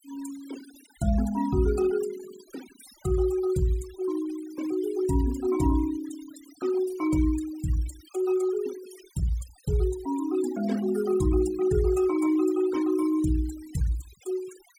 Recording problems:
denoising artefacts; signal-to-artefact ratio 17 dB

